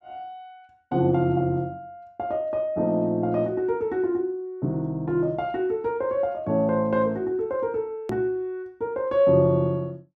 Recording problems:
edit click; at 8 s

